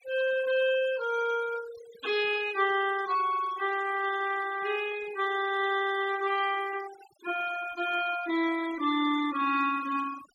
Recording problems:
noise reduction artefacts; signal-to-artefact ratio 15 dB

